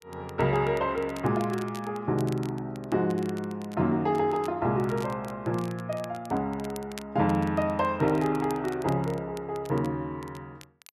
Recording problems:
crackle; vinyl, SNR 22 dB

